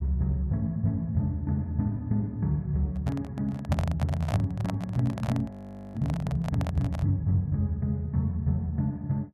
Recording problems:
handling noise; from 3 to 7 s; peak 0 dB vs average level
audio freezing; at 5.5 s

